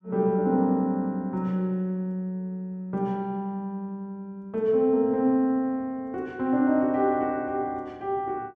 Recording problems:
none

